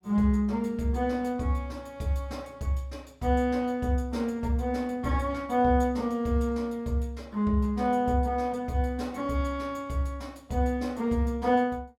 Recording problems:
none

